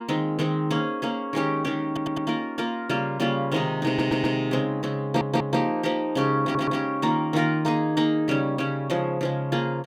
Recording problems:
audio stuttering; 4 times, first at 2 s

